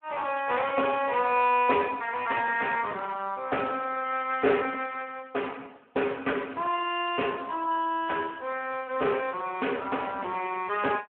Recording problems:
phone line; 280 Hz to 3.1 kHz, Speex

